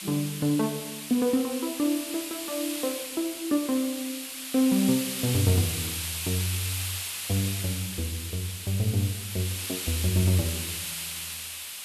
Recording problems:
hiss; SNR 4 dB

